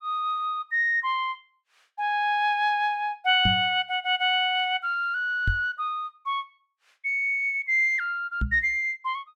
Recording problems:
microphone thump; at 3.5 s, at 5.5 s and at 8.5 s; peak +1 dB vs average level

